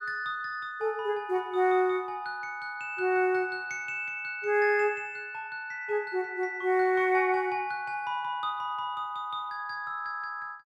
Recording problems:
none

